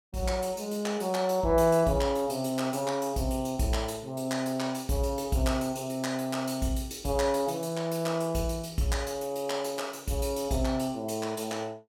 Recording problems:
none

